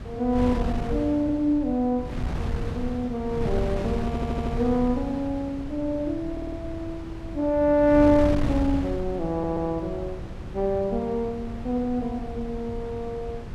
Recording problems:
wind noise; below 190 Hz, SNR 7 dB
audio stuttering; at 4 s, at 6.5 s and at 9.5 s

